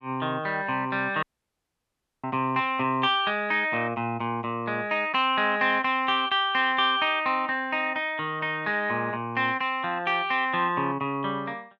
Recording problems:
dropout; at 1 s for 1 s

